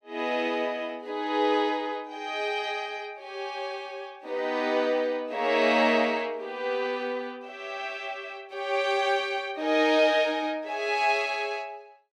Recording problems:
none

